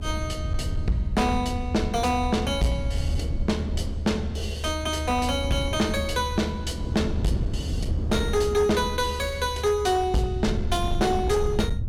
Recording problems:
distortion; hard clipping, signal-to-distortion ratio 10 dB
low-frequency rumble; below 78 Hz, SNR 6 dB
wind noise; below 180 Hz, SNR 10 dB

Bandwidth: 16.5 kHz